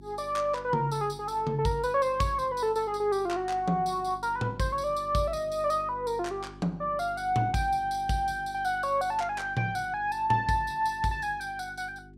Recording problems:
hum; 50 Hz, harmonics up to 400 Hz, SNR 20 dB

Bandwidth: 16 kHz